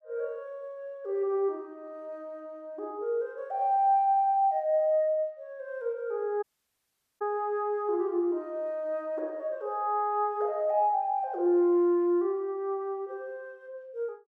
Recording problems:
dropout; at 6.5 s for 1 s

